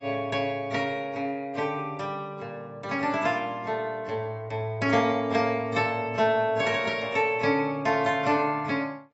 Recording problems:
lossy codec; AAC, log-spectral distance 2 dB, nothing above 7.6 kHz

